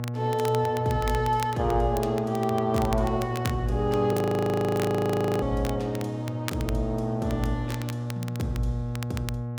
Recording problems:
hum; 60 Hz, harmonics up to 1.1 kHz, SNR 6 dB
crackling; vinyl, SNR 15 dB
audio freezing; at 4 s for 1.5 s

